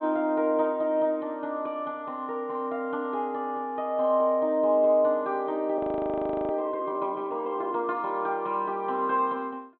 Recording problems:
low-pass filter; nothing above 4 kHz
audio freezing; at 6 s for 0.5 s

